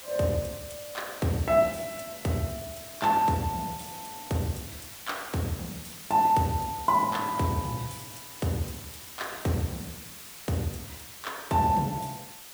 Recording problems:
background hiss; slope +1 dB per octave, SNR 13 dB

